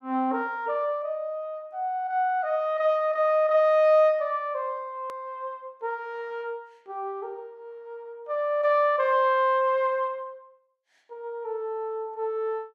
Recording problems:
click at an edit; at 5 s

